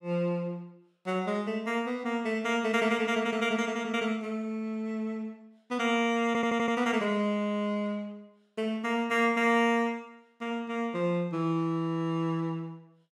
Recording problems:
stutter; at 6.5 s

